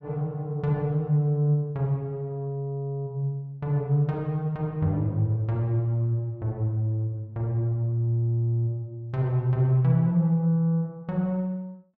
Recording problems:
none

